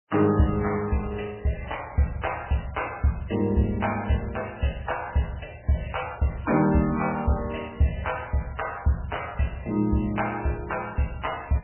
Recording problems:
codec artefacts; MP3, log-spectral distance 7 dB, nothing above 2.7 kHz

